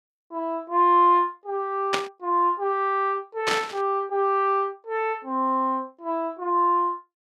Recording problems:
burst of static; at 2 s and at 3.5 s; peak +3 dB vs average level

